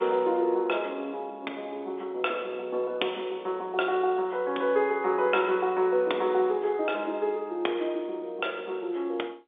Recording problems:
phone line; 280 Hz to 3.6 kHz, G.711

